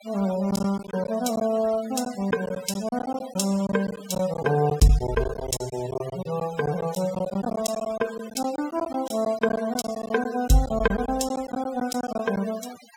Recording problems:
noise reduction artefacts; signal-to-artefact ratio 16 dB
lost packets; 11% of the sound replaced, filled with silence

